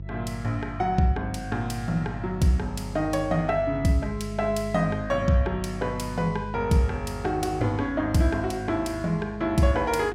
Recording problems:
electrical hum; 50 Hz, harmonics up to 350 Hz, SNR 12 dB

